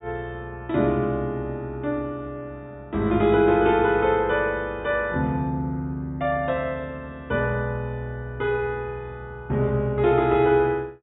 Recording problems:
treble cut off; nothing above 4 kHz

